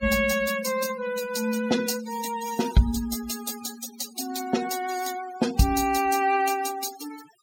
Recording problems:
noise reduction artefacts; signal-to-artefact ratio 11 dB

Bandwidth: 17 kHz